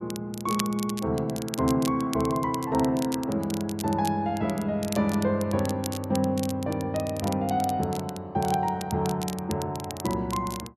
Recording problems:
crackle; vinyl, SNR 13 dB

